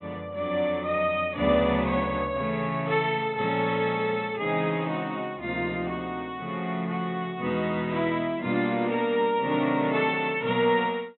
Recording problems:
treble missing; nothing above 3.9 kHz

